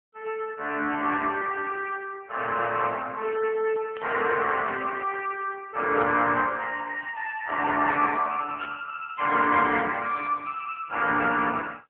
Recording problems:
phone line; 300 Hz to 3.5 kHz, AMR-NB
static burst; at 4 s, at 6 s and at 8.5 s; peak -9 dB vs average level

